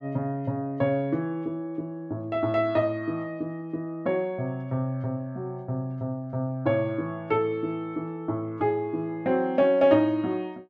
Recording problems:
none

